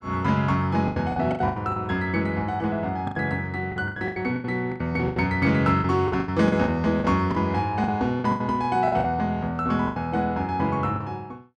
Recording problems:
packet loss; 13% of the sound replaced, filled with the last packet

